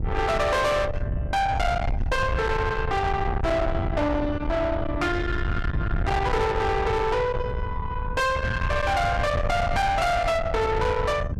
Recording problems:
distortion; soft clipping, signal-to-distortion ratio 7 dB
wind on the microphone; below 660 Hz, SNR 4 dB

